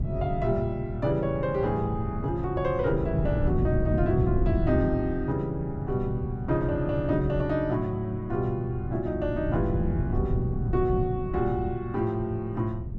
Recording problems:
wind noise; below 160 Hz, SNR 4 dB

